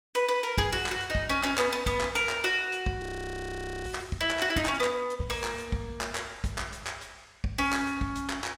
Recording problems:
audio freezing; at 3 s for 1 s

